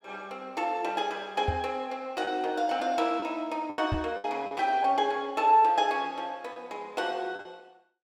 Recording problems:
packet loss; 5% of the sound replaced, filled with the last packet
knock on the microphone; at 1.5 s and at 4 s; peak +2 dB vs average level

